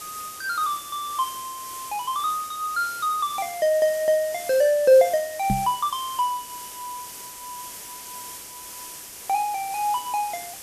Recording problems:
background hiss; SNR 13 dB
microphone bump; at 5.5 s; peak +2 dB vs average level

